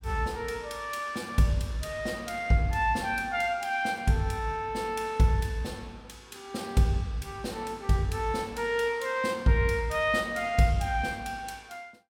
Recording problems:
none

